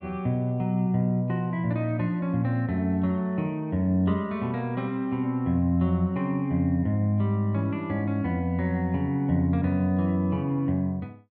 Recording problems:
none

